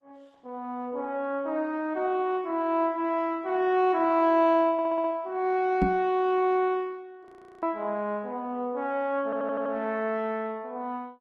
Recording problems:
lossy codec; Opus, log-spectral distance 2 dB
stutter; at 4.5 s and at 9 s
microphone bump; at 6 s; peak +5 dB vs average level
frozen audio; at 7.5 s

